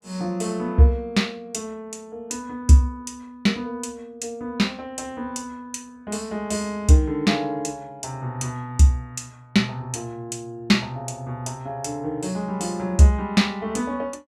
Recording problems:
none

